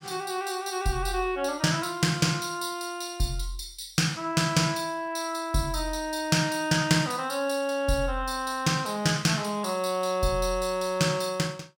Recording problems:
none

